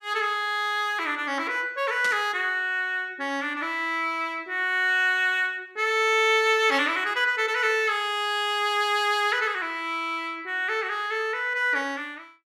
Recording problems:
burst of static; at 2 s; peak -5 dB vs average level

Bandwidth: 15 kHz